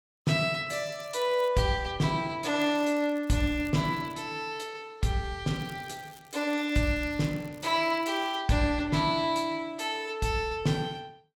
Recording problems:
crackle; at 0.5 s, from 2.5 to 4 s and from 5.5 to 8.5 s; loose cable, SNR 26 dB

